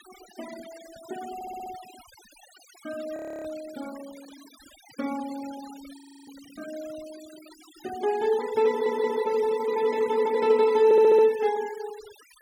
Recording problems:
noise reduction artefacts; signal-to-artefact ratio 22 dB
audio stuttering; at 1.5 s, at 8.5 s and at 11 s
frozen audio; at 3 s and at 6 s

